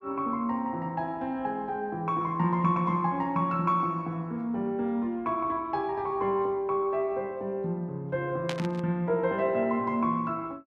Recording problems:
static burst; at 8.5 s; peak -1 dB vs average level

